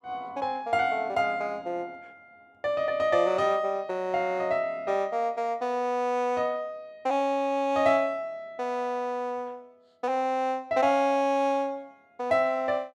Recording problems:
none

